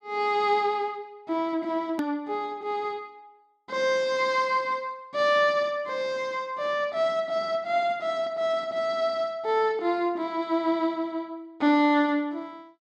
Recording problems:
click at an edit; at 2 s

